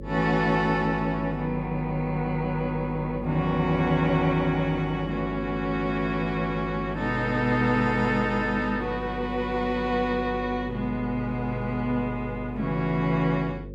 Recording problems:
hum; 50 Hz, harmonics up to 550 Hz, SNR 12 dB

